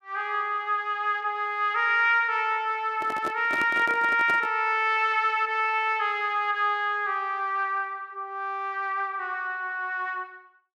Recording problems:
handling noise; from 3 to 4.5 s; peak -5 dB vs average level

